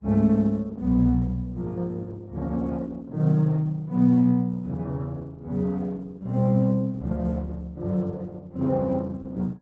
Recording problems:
lossy compression; MP3, then Opus, log-spectral distance 2 dB, nothing above 7.3 kHz

